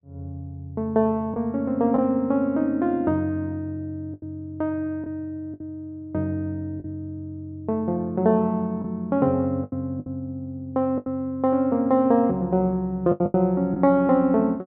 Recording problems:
lost packets; 5% of the sound replaced, filled with the last packet

